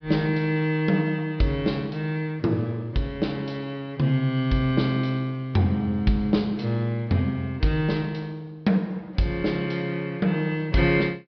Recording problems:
low-pass filter; nothing above 5.5 kHz

